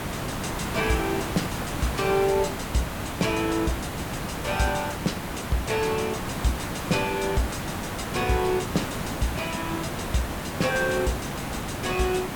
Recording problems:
background hiss; slope -5 dB per octave, SNR 3 dB

